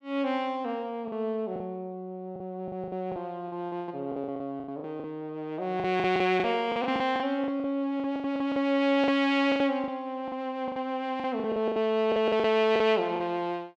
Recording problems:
lost packets; 15% of the sound replaced, filled with the last packet

